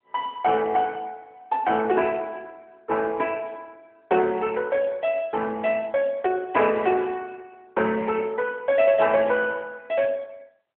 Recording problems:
phone line; 280 Hz to 3.3 kHz, AMR-NB

